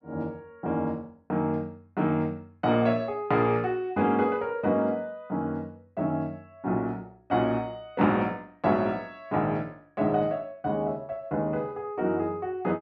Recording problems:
none

